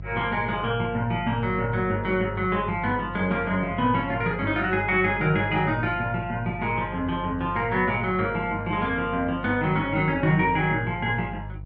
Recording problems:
electrical hum; 50 Hz, harmonics up to 350 Hz, SNR 14 dB

